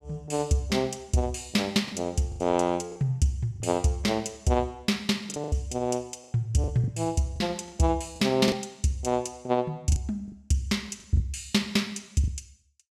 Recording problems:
lost packets; 6% of the sound replaced, filled with the last packet

